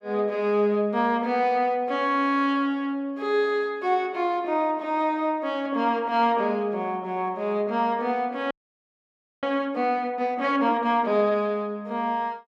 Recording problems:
audio freezing; at 8.5 s for 1 s

